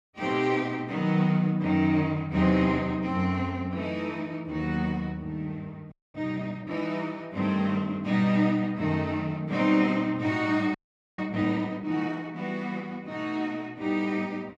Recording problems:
frozen audio; at 6 s and at 11 s

